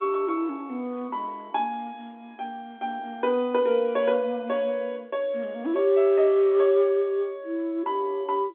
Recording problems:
telephone audio; 240 Hz to 3.5 kHz, G.711

